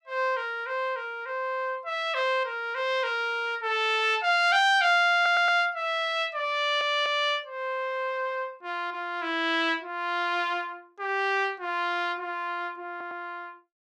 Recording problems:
stutter; at 5 s, at 6.5 s and at 13 s

